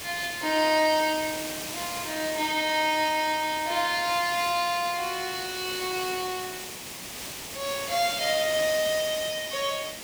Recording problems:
background hiss; SNR 8 dB

